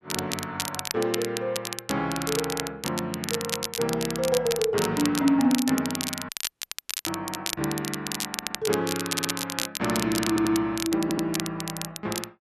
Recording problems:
crackling; vinyl, SNR 4 dB
audio cutting out; at 6.5 s for 1 s
audio stuttering; 4 times, first at 8.5 s

